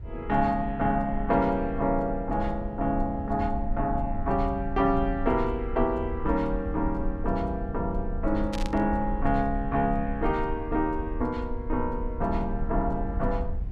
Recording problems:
low-frequency rumble; below 64 Hz, SNR 8 dB
static burst; at 8.5 s; peak -5 dB vs average level

